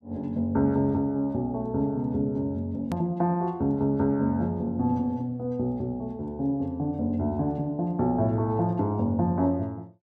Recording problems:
hard cut with a click; at 3 s

